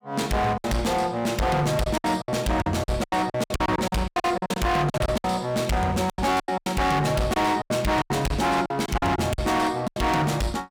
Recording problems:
distortion; hard clipping, signal-to-distortion ratio 6 dB
packet loss; 15% of the sound replaced, filled with silence

